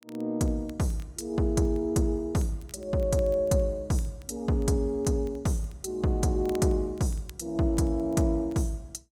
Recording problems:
crackling; vinyl, SNR 28 dB

